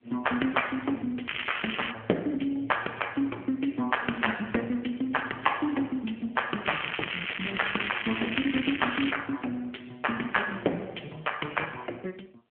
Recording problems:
telephone audio; 280 Hz to 3.2 kHz, AMR-NB
crackling; at 1.5 s and from 6.5 to 9 s; loose cable, SNR 2 dB

